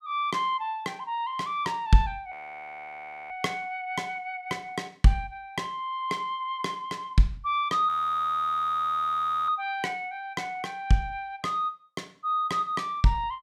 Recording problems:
frozen audio; at 2.5 s for 1 s and at 8 s for 1.5 s

